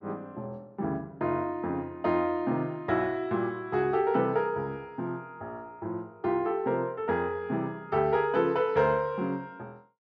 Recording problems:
none

